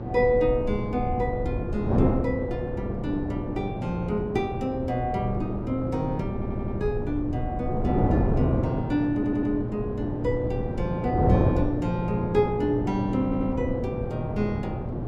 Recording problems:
mains hum; 60 Hz, harmonics up to 840 Hz, SNR 9 dB
rumble; below 94 Hz, SNR 11 dB
wind on the microphone; below 410 Hz, SNR 2 dB
audio stuttering; at 6.5 s, at 9 s and at 13 s

